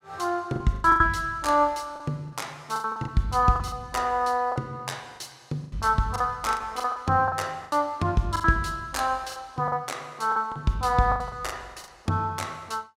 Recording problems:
lost packets; 12% of the sound replaced, filled with the last packet

